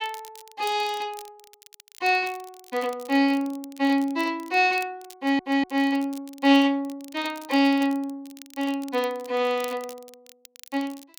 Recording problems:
crackle; vinyl, SNR 22 dB
audio stuttering; at 5 s

